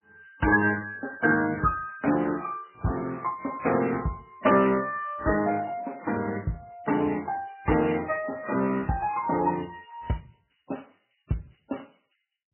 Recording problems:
codec artefacts; Speex, then MP3, log-spectral distance 6 dB, nothing above 2.9 kHz

